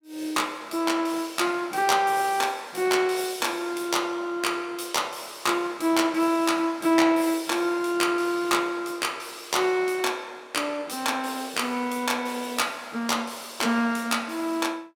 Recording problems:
none

